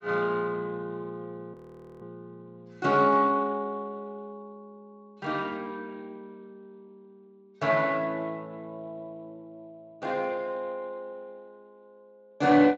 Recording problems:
lossy compression; Speex, log-spectral distance 2 dB
audio freezing; at 1.5 s

